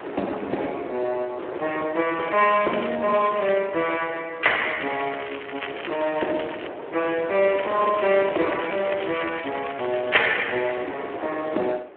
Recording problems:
phone line; 280 Hz to 3.4 kHz, Speex
wind noise; below 910 Hz, SNR 12 dB
crackling; 4 times, first at 2 s; loose cable, SNR 12 dB

